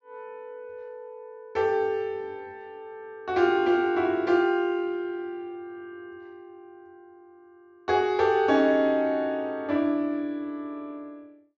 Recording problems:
low-pass filter; nothing above 8 kHz

